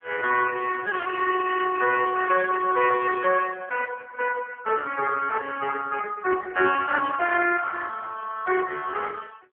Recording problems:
phone line; 300 Hz to 3.3 kHz, AMR-NB

